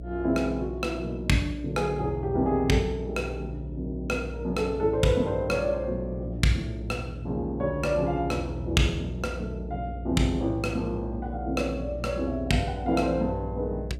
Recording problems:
hum; 60 Hz, harmonics up to 660 Hz, SNR 10 dB

